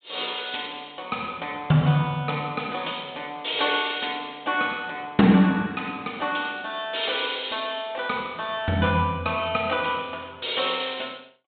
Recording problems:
treble missing; nothing above 4 kHz

